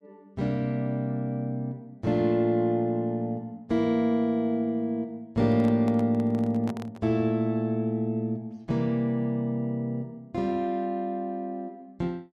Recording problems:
handling noise; from 5.5 to 7 s; peak -8 dB vs average level

